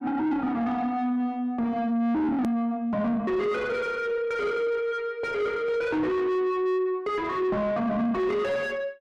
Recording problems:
distortion; soft clipping, signal-to-distortion ratio 8 dB
click at an edit; at 2.5 s

